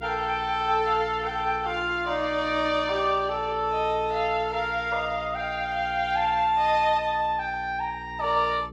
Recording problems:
hum; 60 Hz, harmonics up to 480 Hz, SNR 18 dB

